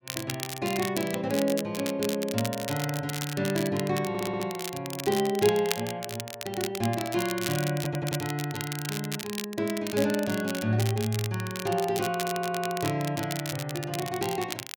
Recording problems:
crackling; vinyl, SNR 7 dB
audio stuttering; at 4 s, at 8 s and at 12 s

